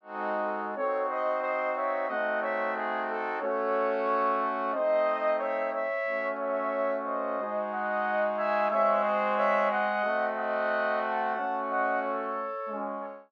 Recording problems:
none

